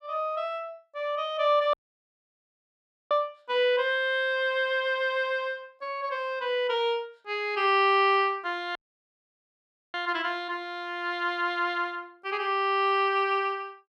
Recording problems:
dropout; at 1.5 s for 1.5 s and at 9 s for 1 s

